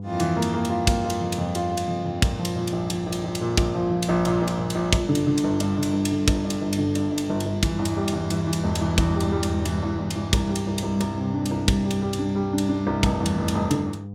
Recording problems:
electrical hum; 50 Hz, harmonics up to 700 Hz, SNR 11 dB

